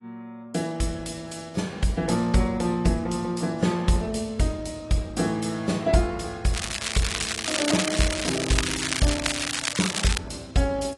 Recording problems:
lossy codec; AAC, log-spectral distance 8 dB, nothing above 11 kHz
crackling; from 6.5 to 10 s; loose cable, SNR 1 dB

